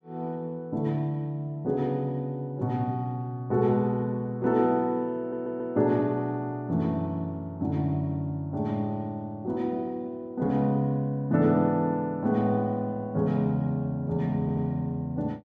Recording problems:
stutter; at 5 s and at 14 s

